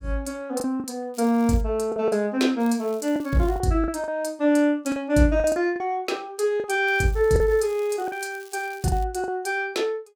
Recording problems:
packet loss; 7% of the sound replaced, filled with the last packet
crackle; at 1 s, at 2.5 s and from 7 to 9 s; loose cable, SNR 25 dB

